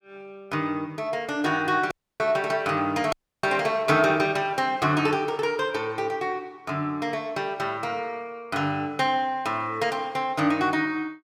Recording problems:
dropout; at 2 s and at 3 s

